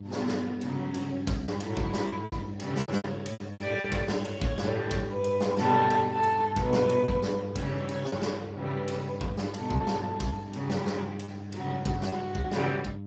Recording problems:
codec artefacts; Speex, log-spectral distance 4 dB, nothing above 7.6 kHz
hum; 50 Hz, harmonics up to 700 Hz, SNR 10 dB
packet loss; 6% of the sound replaced, filled with repeated pitch periods

